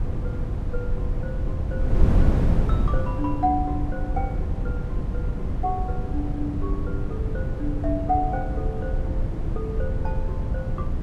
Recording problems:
wind on the microphone; below 110 Hz, SNR -4 dB

